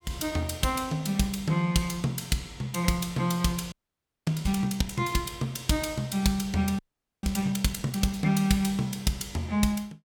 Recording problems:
audio freezing; at 3.5 s for 0.5 s and at 7 s

